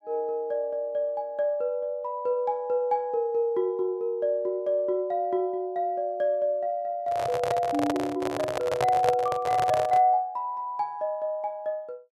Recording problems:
handling noise; from 7 to 10 s; peak +3 dB vs average level

